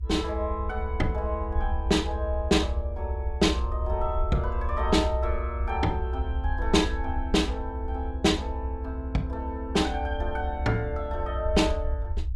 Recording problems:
low-frequency rumble; below 74 Hz, SNR 3 dB

